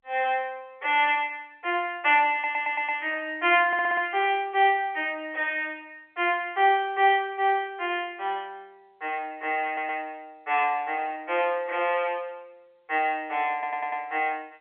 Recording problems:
phone line; 340 Hz to 3.3 kHz, G.711
audio stuttering; 4 times, first at 2.5 s

